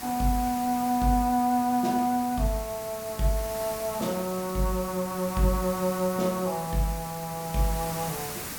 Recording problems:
hiss; slope -2 dB per octave, SNR 10 dB

